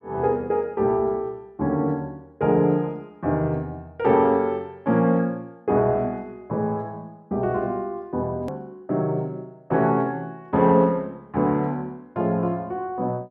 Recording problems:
click at an edit; at 8.5 s

